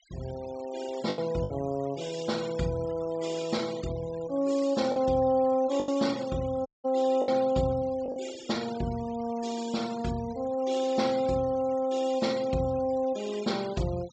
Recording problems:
low-pass filter; nothing above 8 kHz
denoising artefacts; signal-to-artefact ratio 18 dB
lost packets; 3% of the sound replaced, filled with the last packet
audio cutting out; at 6.5 s

